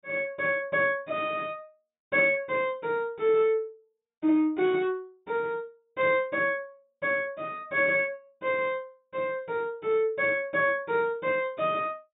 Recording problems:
treble cut off; nothing above 4 kHz

